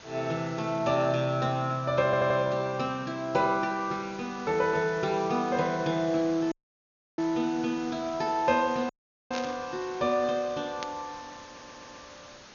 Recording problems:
low-pass filter; nothing above 6.8 kHz
hiss; slope -2 dB per octave, SNR 18 dB
audio stuttering; at 2 s and at 11 s
audio cutting out; at 6.5 s for 0.5 s and at 9 s
burst of static; at 9.5 s and at 11 s; peak -4 dB vs average level

